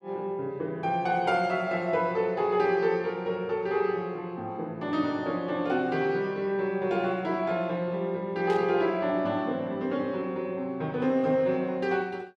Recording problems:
static burst; at 8.5 s; peak -9 dB vs average level

